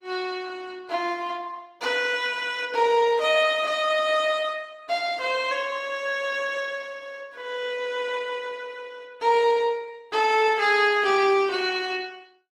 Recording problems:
lossy codec; Opus, log-spectral distance 3 dB

